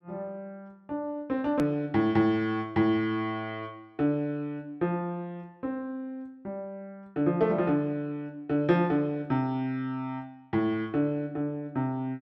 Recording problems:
hard cut with a click; at 1.5 s

